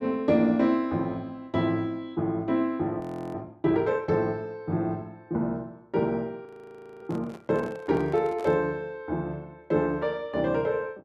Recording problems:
audio freezing; at 3 s and at 6.5 s for 0.5 s
handling noise; from 7 to 8.5 s; peak -10 dB vs average level

